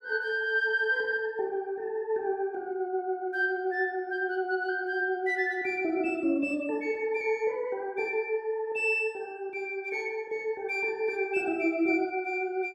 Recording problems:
none

